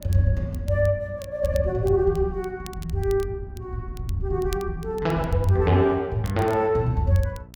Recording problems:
hum; 60 Hz, harmonics up to 1 kHz, SNR 23 dB
crackling; vinyl, SNR 24 dB

